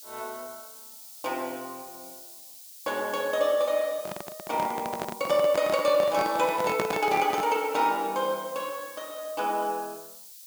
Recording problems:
background hiss; SNR 16 dB
microphone handling noise; from 4 to 7.5 s; peak +3 dB vs average level

